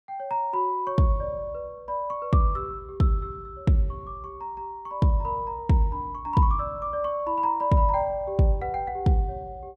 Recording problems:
none

